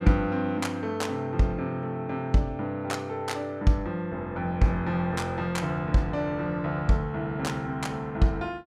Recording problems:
none

